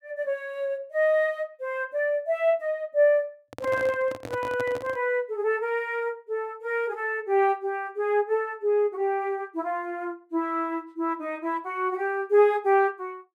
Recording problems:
microphone handling noise; from 3.5 to 5 s; peak -5 dB vs average level

